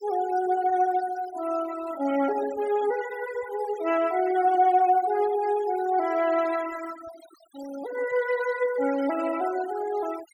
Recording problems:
noise reduction artefacts; signal-to-artefact ratio 17 dB

